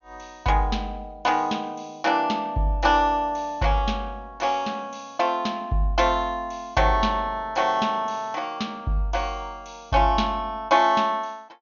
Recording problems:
low-pass filter; nothing above 6.8 kHz

